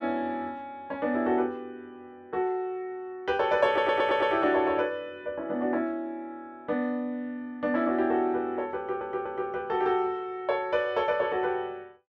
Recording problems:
stutter; at 3.5 s and at 9 s

